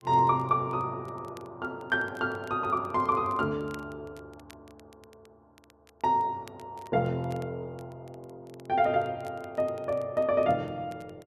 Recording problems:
crackling; vinyl, SNR 30 dB

